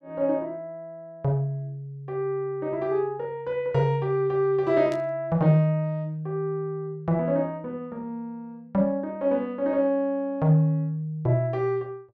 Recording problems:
static burst; at 5 s; peak -12 dB vs average level

